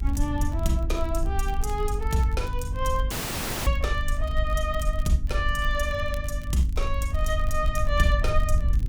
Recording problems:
hum; 50 Hz, harmonics up to 300 Hz, SNR 10 dB
rumble; below 60 Hz, SNR 2 dB
wind on the microphone; below 88 Hz, SNR 7 dB
crackle; vinyl, SNR 23 dB
dropout; at 3 s for 0.5 s

